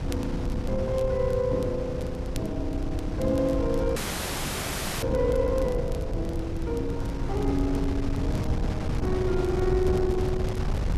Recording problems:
wind on the microphone; below 150 Hz, SNR 3 dB
crackling; vinyl, SNR 23 dB
audio freezing; at 4 s for 1 s

